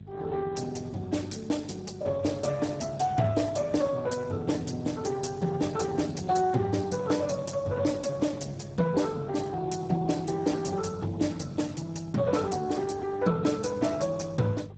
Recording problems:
lossy compression; Speex, log-spectral distance 5 dB, nothing above 7.8 kHz
hum; 50 Hz, harmonics up to 400 Hz, SNR 18 dB

